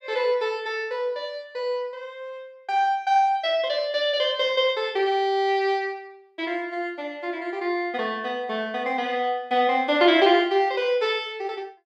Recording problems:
none

